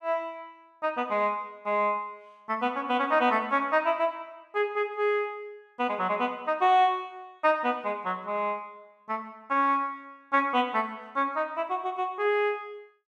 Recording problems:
none

